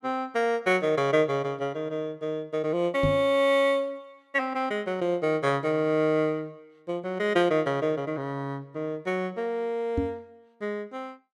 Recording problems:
knock on the microphone; at 3 s and at 10 s; peak +2 dB vs average level

